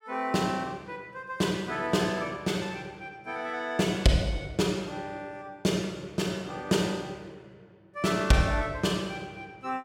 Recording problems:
none

